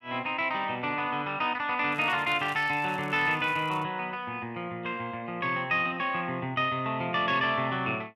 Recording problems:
crackle; from 2 to 4 s; loose cable, SNR 27 dB

